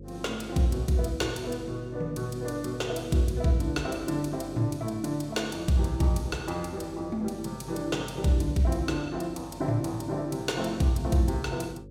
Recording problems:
electrical hum; 50 Hz, harmonics up to 550 Hz, SNR 17 dB

